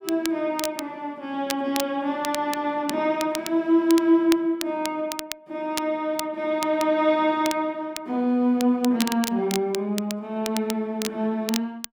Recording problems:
crackle; vinyl, SNR 11 dB

